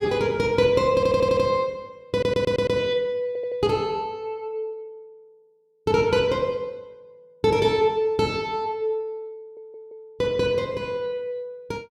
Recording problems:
stutter; 4 times, first at 1 s

